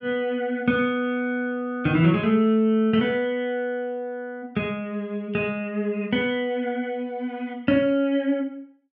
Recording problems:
none

